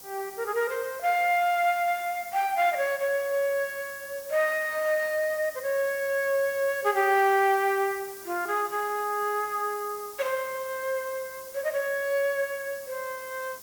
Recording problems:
hiss; SNR 15 dB

